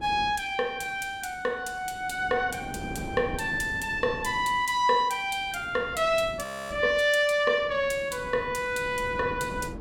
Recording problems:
wind noise; below 390 Hz, SNR 15 dB
audio freezing; at 6.5 s

